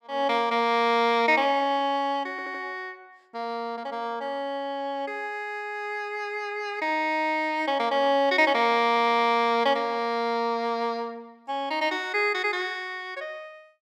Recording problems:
audio stuttering; at 2.5 s and at 9 s

